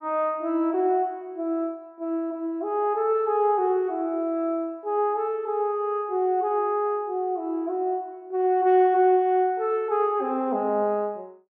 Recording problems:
none

